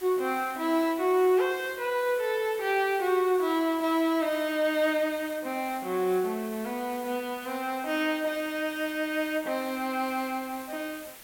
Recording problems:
hiss; slope -1 dB per octave, SNR 17 dB

